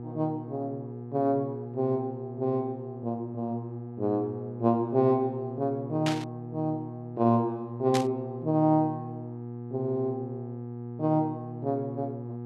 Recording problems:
hum; 60 Hz, harmonics up to 840 Hz, SNR 9 dB
burst of static; at 6 s and at 8 s; peak +1 dB vs average level

